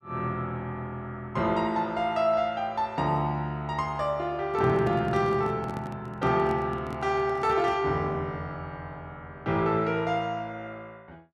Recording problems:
microphone handling noise; from 4.5 to 8 s; peak -6 dB vs average level

